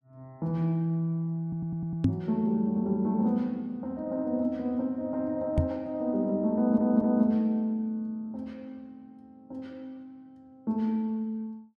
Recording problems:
audio stuttering; at 1.5 s and at 6.5 s
microphone thump; at 2 s and at 5.5 s; peak +8 dB vs average level

